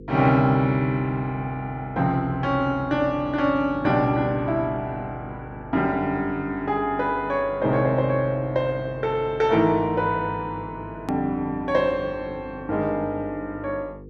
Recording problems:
electrical hum; 50 Hz, harmonics up to 500 Hz, SNR 17 dB
hard cut with a click; at 11 s

